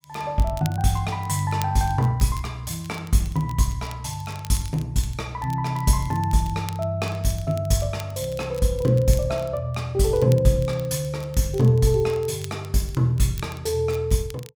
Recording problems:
crackle; vinyl, SNR 22 dB

